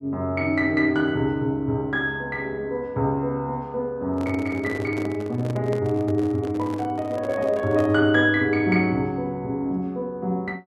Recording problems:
handling noise; from 4 to 8 s; peak -5 dB vs average level

